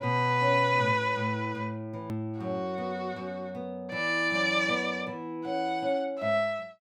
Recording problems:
hard cut with a click; at 2 s

